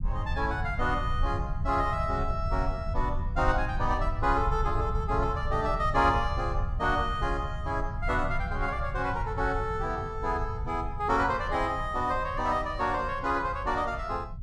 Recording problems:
rumble; below 92 Hz, SNR 5 dB

